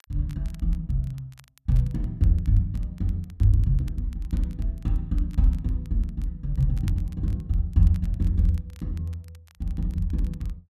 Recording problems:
crackling; vinyl, SNR 30 dB

